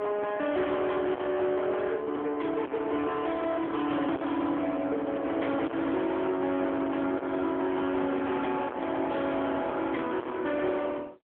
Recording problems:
telephone audio; 240 Hz to 3.4 kHz, AMR-NB
distorted audio; soft clipping, signal-to-distortion ratio 4 dB

